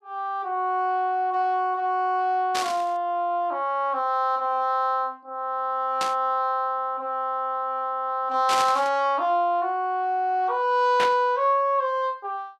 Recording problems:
static burst; 4 times, first at 2.5 s; peak 0 dB vs average level

